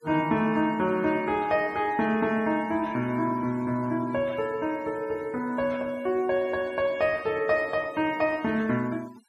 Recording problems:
noise reduction artefacts; signal-to-artefact ratio 24 dB

